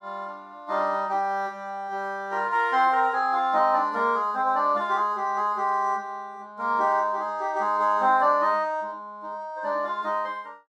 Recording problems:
none

